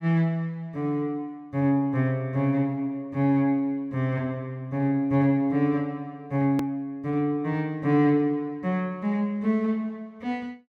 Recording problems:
edit click; at 6.5 s

